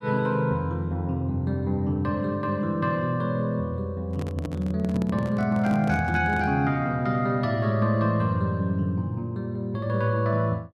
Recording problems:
microphone handling noise; from 4 to 6.5 s; peak -5 dB vs average level

